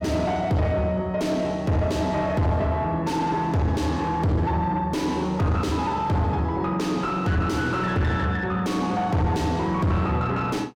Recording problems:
distorted audio; soft clipping, signal-to-distortion ratio 7 dB

